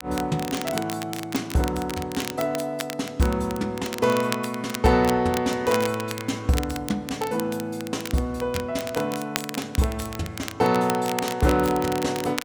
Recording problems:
crackling; vinyl, SNR 11 dB

